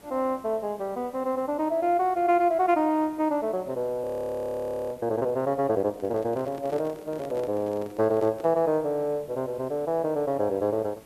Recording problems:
hiss; slope -5 dB per octave, SNR 25 dB
audio freezing; at 4 s for 1 s
microphone handling noise; from 6 to 8.5 s; peak -9 dB vs average level

